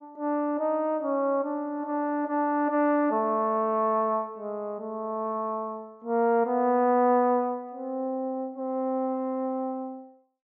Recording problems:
none

